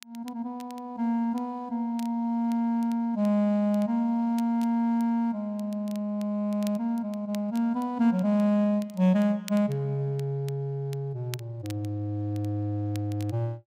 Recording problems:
crackle; vinyl, SNR 24 dB

